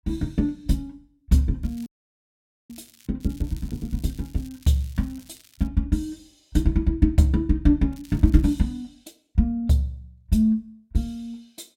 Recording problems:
crackling; from 1.5 to 3 s, from 3 to 5.5 s and at 8 s; loose cable, SNR 27 dB
audio cutting out; at 2 s for 1 s

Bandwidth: 16.5 kHz